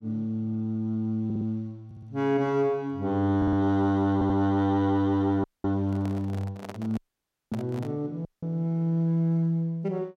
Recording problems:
stutter; 4 times, first at 1.5 s
dropout; at 5.5 s, at 7 s for 0.5 s and at 8.5 s
microphone handling noise; from 6 to 8 s; peak -8 dB vs average level

